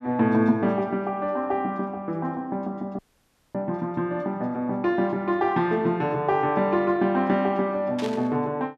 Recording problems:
audio cutting out; at 3 s for 0.5 s
static burst; at 8 s; peak -7 dB vs average level

